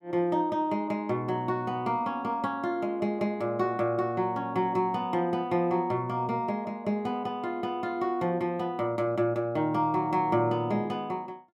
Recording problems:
none

